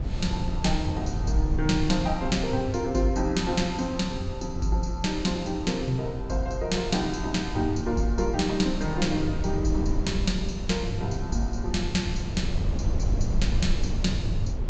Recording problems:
treble missing; nothing above 8 kHz
low-frequency rumble; below 100 Hz, SNR 5 dB

